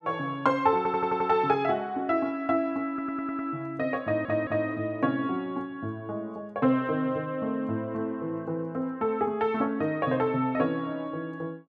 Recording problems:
audio stuttering; at 1 s, at 3 s and at 4 s

